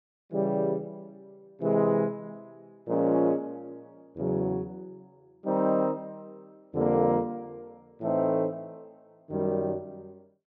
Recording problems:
treble cut off; nothing above 8 kHz

